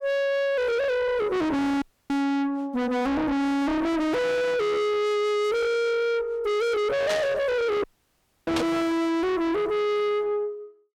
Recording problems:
distortion; soft clipping, signal-to-distortion ratio 5 dB
audio cutting out; at 2 s and at 8 s for 0.5 s
static burst; at 7 s and at 8.5 s; peak 0 dB vs average level

